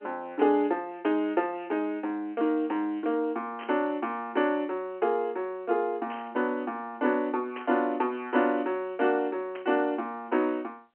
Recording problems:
phone line; 220 Hz to 3.3 kHz, G.711
burst of static; 4 times, first at 3.5 s; peak -9 dB vs average level

